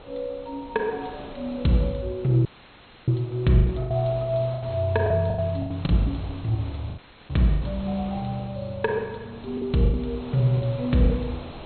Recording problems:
low-pass filter; nothing above 4.2 kHz
wind on the microphone; below 1.1 kHz, SNR 17 dB
lost packets; 8% of the sound replaced, filled with the last packet
audio cutting out; at 2.5 s for 0.5 s and at 7 s

